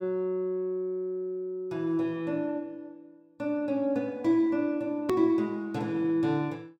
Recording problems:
hard cut with a click; at 5 s

